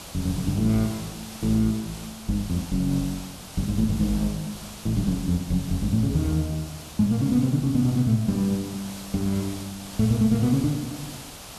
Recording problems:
background hiss; SNR 14 dB

